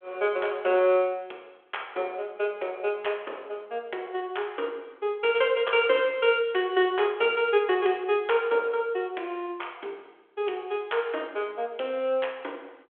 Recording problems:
telephone audio; 320 Hz to 3.4 kHz, G.726

